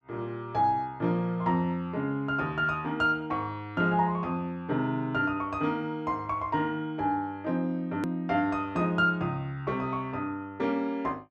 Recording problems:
hard cut with a click; at 8 s

